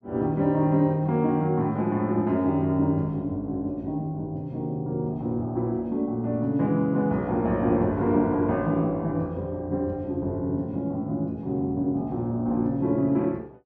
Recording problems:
none

